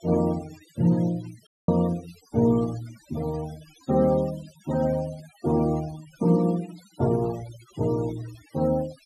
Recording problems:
noise reduction artefacts; signal-to-artefact ratio 19 dB
dropout; at 1.5 s

